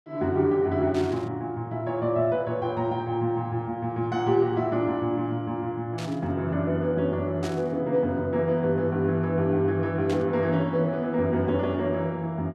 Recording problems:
burst of static; 4 times, first at 1 s; peak -9 dB vs average level

